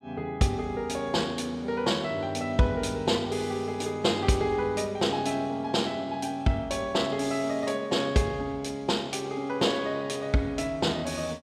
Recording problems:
none

